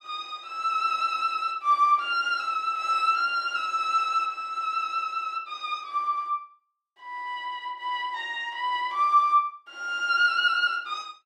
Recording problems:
none

